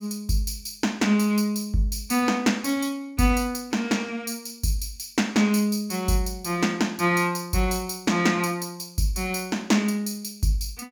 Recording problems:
none

